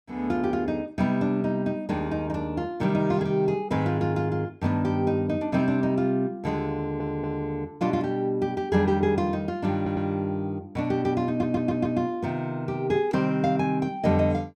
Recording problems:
stutter; at 7 s, at 10 s and at 11 s

